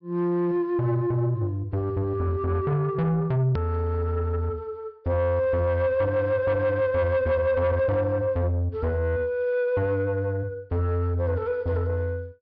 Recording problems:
treble missing; nothing above 5.5 kHz
distortion; soft clipping, signal-to-distortion ratio 12 dB
hard cut with a click; at 3.5 s

